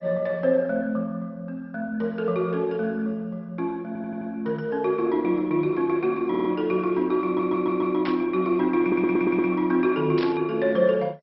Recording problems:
lossy compression; MP2, log-spectral distance 2 dB, nothing above 5.5 kHz
audio stuttering; 4 times, first at 4 s
burst of static; at 8 s and at 10 s; peak -5 dB vs average level

